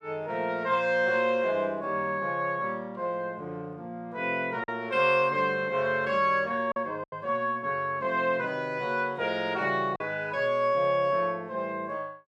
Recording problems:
lost packets; 1.6% of the sound replaced, filled with silence

